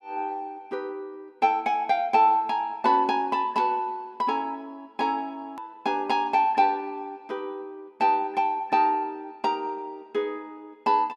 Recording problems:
click at an edit; at 5.5 s

